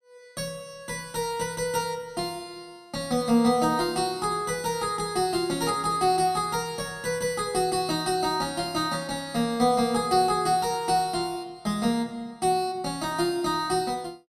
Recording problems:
none

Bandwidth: 14.5 kHz